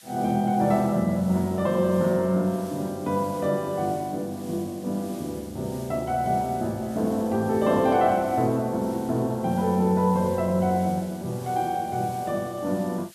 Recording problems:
background hiss; SNR 22 dB

